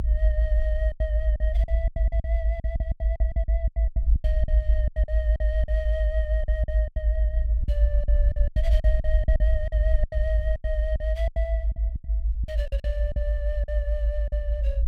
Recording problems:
low-frequency rumble; below 58 Hz, strongest tone 56 Hz, SNR -10 dB
packet loss; 15% of the sound replaced, filled with silence

